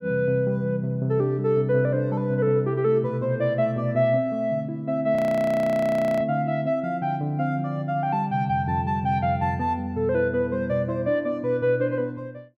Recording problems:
frozen audio; at 5 s for 1 s

